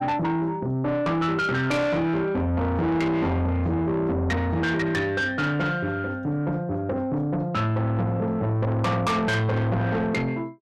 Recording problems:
distorted audio; soft clipping, signal-to-distortion ratio 7 dB

